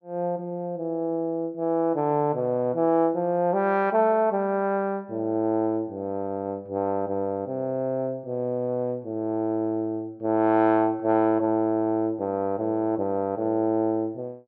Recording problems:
none

